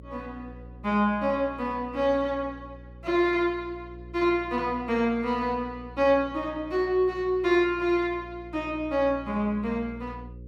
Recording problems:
hum; 60 Hz, harmonics up to 540 Hz, SNR 19 dB

